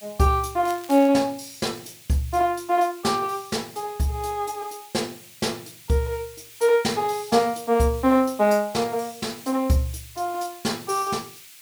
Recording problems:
background hiss; SNR 20 dB
crackling; at 0.5 s; loose cable, SNR 20 dB

